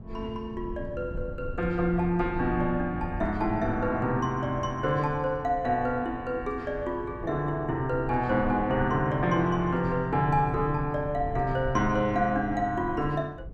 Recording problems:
low-frequency rumble; below 130 Hz, SNR 13 dB

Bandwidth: 14.5 kHz